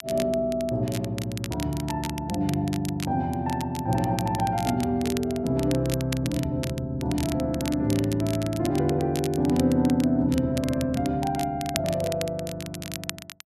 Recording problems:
crackle; vinyl, SNR 12 dB

